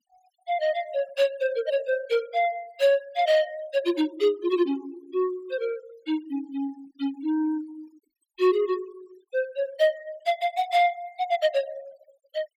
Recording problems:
denoising artefacts; signal-to-artefact ratio 22 dB

